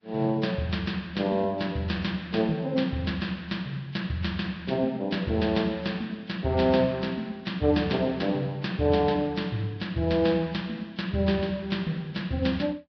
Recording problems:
lossy compression; Vorbis, log-spectral distance 3 dB, nothing above 5.2 kHz

